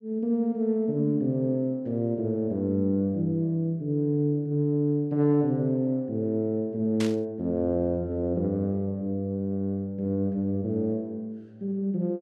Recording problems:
static burst; at 7 s; peak -4 dB vs average level

